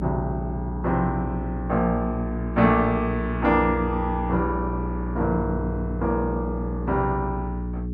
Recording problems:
electrical hum; 60 Hz, harmonics up to 420 Hz, SNR 4 dB

